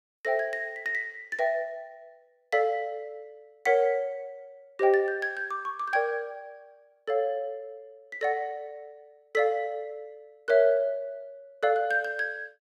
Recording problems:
none

